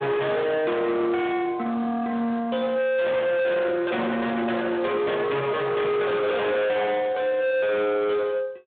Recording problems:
phone line; 170 Hz to 3.9 kHz, Speex
distorted audio; hard clipping, signal-to-distortion ratio 7 dB

